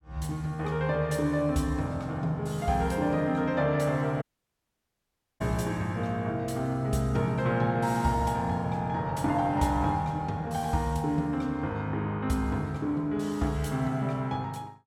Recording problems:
dropout; at 4 s for 1 s

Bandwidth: 17 kHz